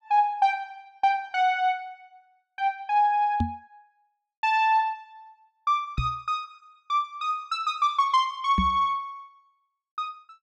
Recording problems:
microphone thump; at 3.5 s, at 6 s and at 8.5 s; peak +3 dB vs average level

